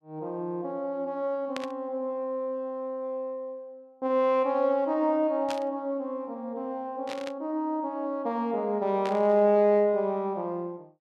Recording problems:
static burst; 4 times, first at 1.5 s; peak -4 dB vs average level

